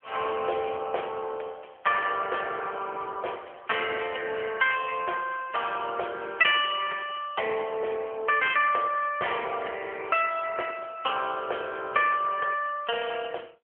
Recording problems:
phone line; 340 Hz to 3.3 kHz, AMR-NB

